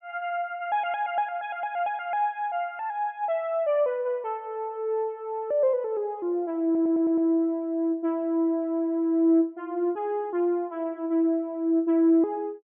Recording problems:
low-pass filter; nothing above 3.4 kHz
stutter; at 6.5 s

